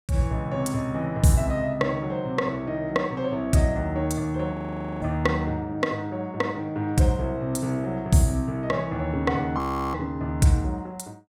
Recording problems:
audio freezing; at 4.5 s and at 9.5 s

